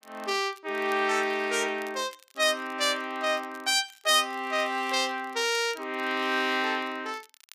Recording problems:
crackle; vinyl, SNR 27 dB

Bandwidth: 15 kHz